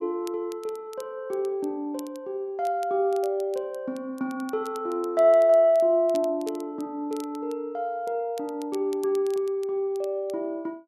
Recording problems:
crackling; vinyl, SNR 25 dB

